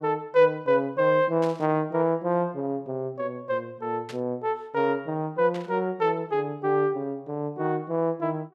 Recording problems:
burst of static; at 1.5 s, at 4 s and at 5.5 s; peak -11 dB vs average level

